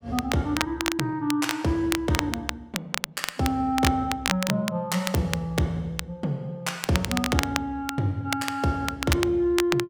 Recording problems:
crackle; vinyl, SNR 5 dB

